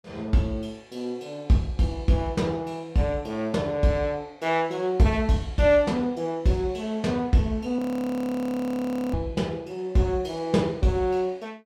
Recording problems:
audio freezing; at 8 s for 1.5 s

